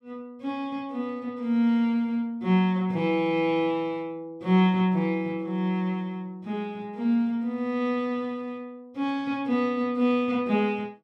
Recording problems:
none

